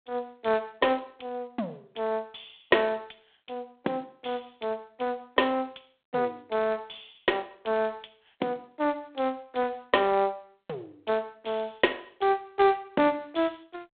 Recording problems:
telephone audio; 240 Hz to 3.6 kHz, G.726

